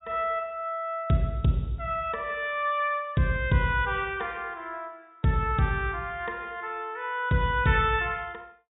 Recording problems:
treble missing; nothing above 4 kHz

